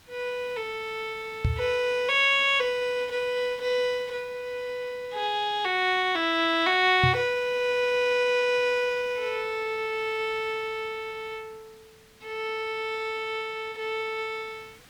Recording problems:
background hiss; slope -1 dB per octave, SNR 27 dB
microphone thump; at 1.5 s and at 7 s; peak +4 dB vs average level

